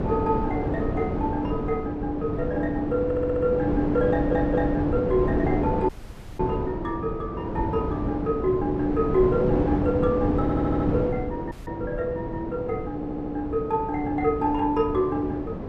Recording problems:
wind noise; below 440 Hz, SNR 3 dB
audio stuttering; 4 times, first at 3 s
audio cutting out; at 6 s for 0.5 s and at 12 s

